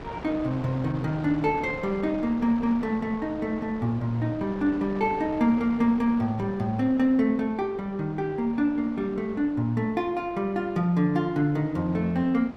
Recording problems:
wind noise; below 930 Hz, SNR 16 dB

